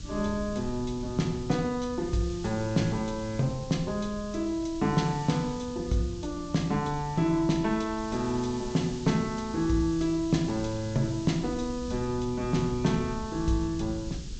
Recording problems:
treble missing; nothing above 8 kHz
background hiss; slope +4 dB per octave, SNR 18 dB
wind on the microphone; below 120 Hz, SNR 14 dB

